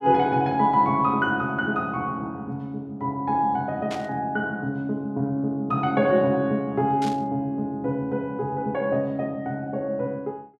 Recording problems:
burst of static; at 4 s and at 7 s; peak -8 dB vs average level

